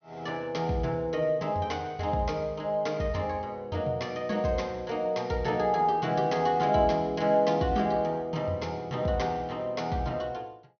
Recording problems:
treble cut off; nothing above 6.3 kHz

